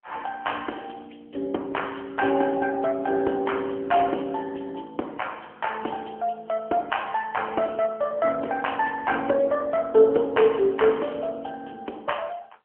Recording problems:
telephone audio; 300 Hz to 3.1 kHz, AMR-NB

